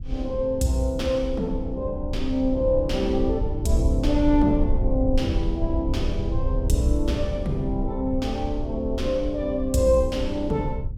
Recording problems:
rumble; below 76 Hz, SNR 5 dB

